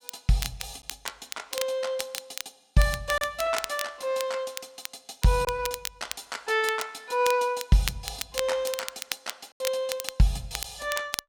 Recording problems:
crackling; vinyl, SNR 8 dB
lost packets; 1% of the sound replaced, filled with silence

